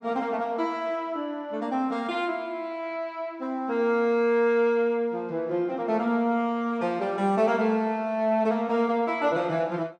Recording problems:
none

